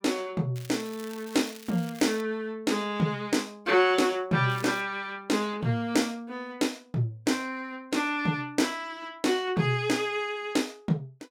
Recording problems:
crackle; from 0.5 to 2 s and at 4.5 s; loose cable, SNR 19 dB

